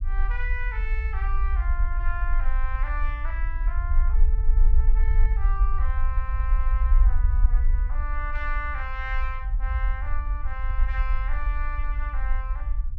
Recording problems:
low-frequency rumble; below 50 Hz, SNR -9 dB

